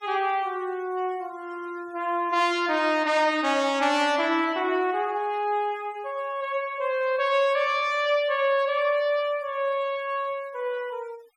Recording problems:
denoising artefacts; signal-to-artefact ratio 25 dB

